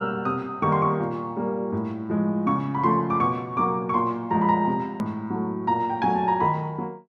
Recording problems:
click at an edit; at 5 s

